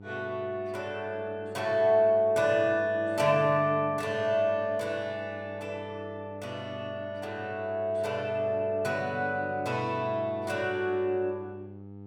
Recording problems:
mains hum; 50 Hz, harmonics up to 900 Hz, SNR 17 dB

